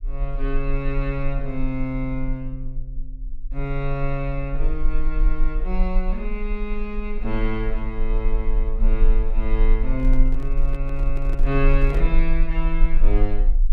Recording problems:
rumble; below 34 Hz, strongest tone 22 Hz, SNR -3 dB
handling noise; from 10 to 12 s; peak -4 dB vs average level

